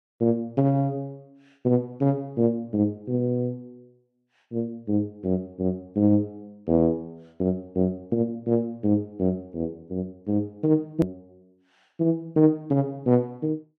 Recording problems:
hard cut with a click; at 11 s

